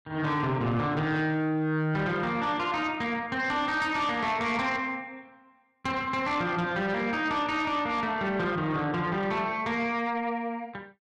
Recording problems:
distorted audio; soft clipping, signal-to-distortion ratio 11 dB

